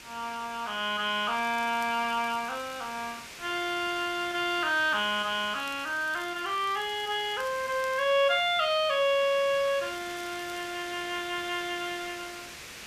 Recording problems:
background hiss; SNR 14 dB
crackling; from 1.5 to 3 s, from 5.5 to 8 s and at 10 s; loose cable, SNR 23 dB

